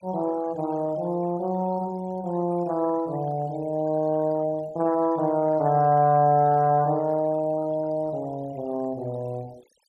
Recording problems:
noise reduction artefacts; signal-to-artefact ratio 25 dB

